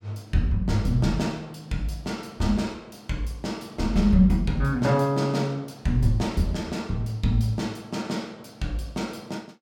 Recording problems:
none

